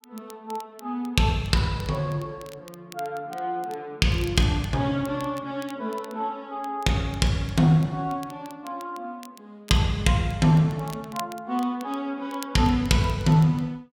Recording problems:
crackling; vinyl, SNR 23 dB

